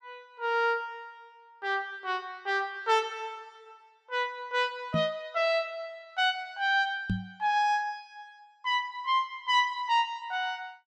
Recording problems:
microphone bump; at 5 s and at 7 s; peak +3 dB vs average level

